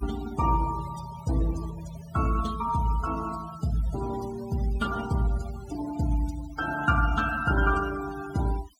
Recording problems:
noise reduction artefacts; signal-to-artefact ratio 14 dB

